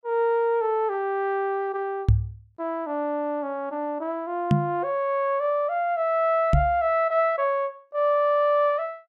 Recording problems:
microphone thump; at 2 s, at 4.5 s and at 6.5 s; peak +8 dB vs average level

